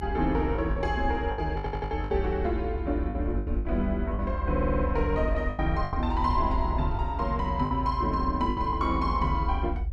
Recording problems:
low-frequency rumble; below 74 Hz, strongest tone 54 Hz, SNR 3 dB
packet loss; 8% of the sound replaced, filled with the last packet
audio stuttering; at 1.5 s and at 4.5 s

